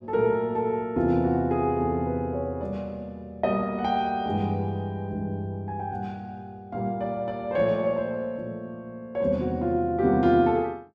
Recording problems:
none

